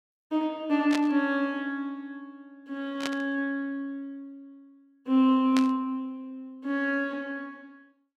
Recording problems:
burst of static; at 1 s, at 3 s and at 5.5 s; peak -1 dB vs average level

